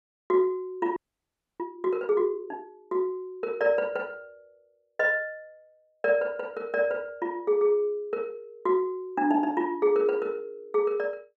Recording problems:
frozen audio; at 1 s for 0.5 s

